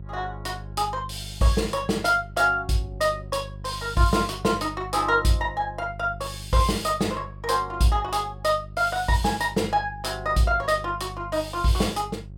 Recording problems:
hum; 50 Hz, harmonics up to 400 Hz, SNR 15 dB

